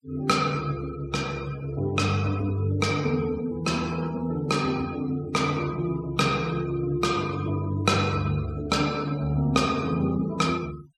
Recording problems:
noise reduction artefacts; signal-to-artefact ratio 19 dB

